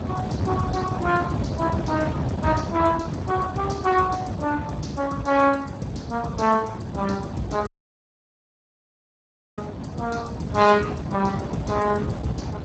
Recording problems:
codec artefacts; Speex, log-spectral distance 4 dB, nothing above 7.6 kHz
wind on the microphone; below 360 Hz, SNR 5 dB
dropout; at 7.5 s for 2 s

